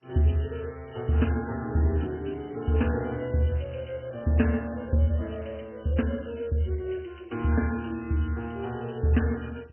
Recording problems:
lossy codec; MP3, then MP2, log-spectral distance 7 dB, nothing above 3 kHz

